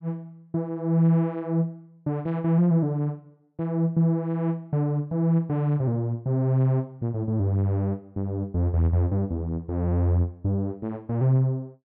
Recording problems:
none

